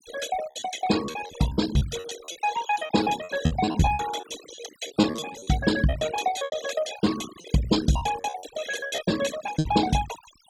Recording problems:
denoising artefacts; signal-to-artefact ratio 10 dB
lost packets; 16% of the sound replaced, filled with repeated pitch periods

